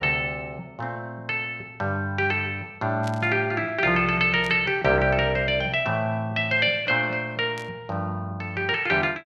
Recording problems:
burst of static; at 3 s, at 4.5 s and at 7.5 s; peak -10 dB vs average level

